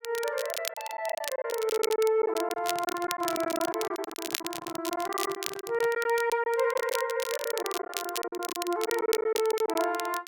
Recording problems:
crackle; vinyl, SNR 7 dB
lost packets; 13% of the sound replaced, filled with silence
microphone handling noise; from 2.5 to 6 s; peak -7 dB vs average level

